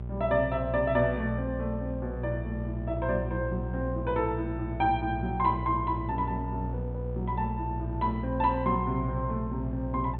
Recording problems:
treble missing; nothing above 4 kHz
electrical hum; 60 Hz, harmonics up to 600 Hz, SNR 5 dB

